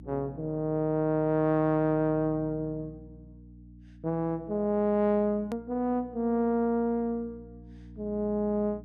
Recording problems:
hum; 60 Hz, harmonics up to 300 Hz, SNR 21 dB
hard cut with a click; at 5.5 s

